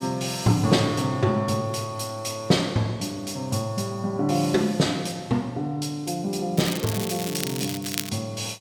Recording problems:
crackling; from 6.5 to 8 s; loose cable, SNR 7 dB

